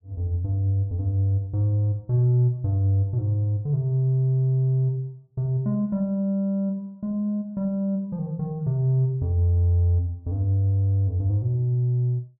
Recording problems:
none

